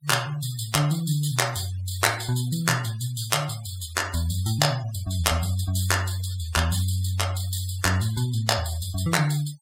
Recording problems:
noise reduction artefacts; signal-to-artefact ratio 16 dB

